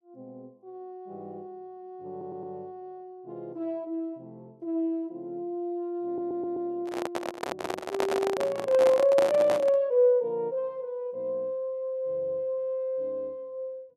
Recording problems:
stutter; at 2 s and at 6 s
handling noise; from 7 to 10 s; peak +3 dB vs average level

